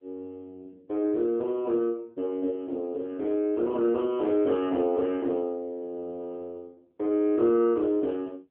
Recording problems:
phone line; 240 Hz to 3.2 kHz, AMR-NB

